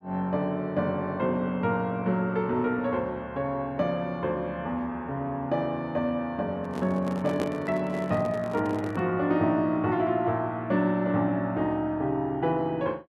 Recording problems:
microphone handling noise; from 6.5 to 9 s; peak 0 dB vs average level

